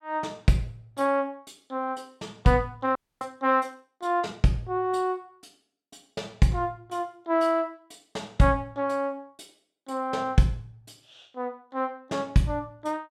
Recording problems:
frozen audio; at 3 s

